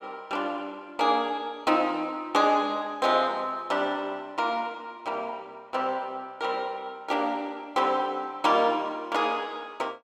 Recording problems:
none

